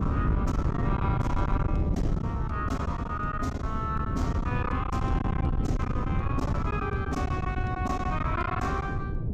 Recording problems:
distorted audio; soft clipping, signal-to-distortion ratio 11 dB
wind on the microphone; below 190 Hz, SNR -2 dB
packet loss; 10% of the sound replaced, filled with silence

